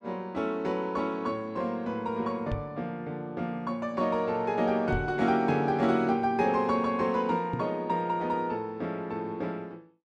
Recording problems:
knock on the microphone; at 2.5 s, at 5 s and at 7.5 s; peak 0 dB vs average level

